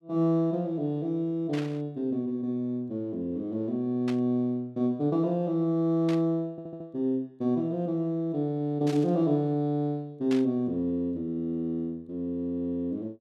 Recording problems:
static burst; 5 times, first at 1.5 s; peak -6 dB vs average level
audio stuttering; at 6.5 s

